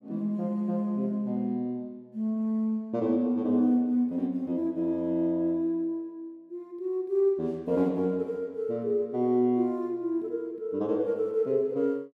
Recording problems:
none

